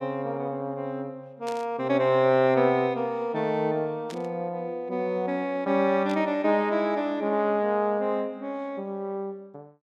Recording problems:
burst of static; at 1.5 s, at 4 s and at 6 s; peak -10 dB vs average level

